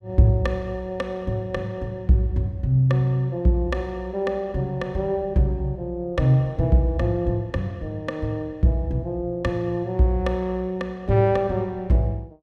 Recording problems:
none

